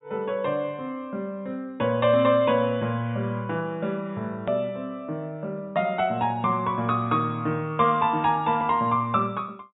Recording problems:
low-pass filter; nothing above 4 kHz
edit click; at 4.5 s

